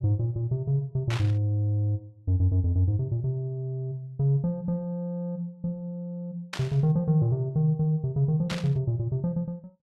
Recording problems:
burst of static; at 1 s, at 6.5 s and at 8.5 s; peak -3 dB vs average level

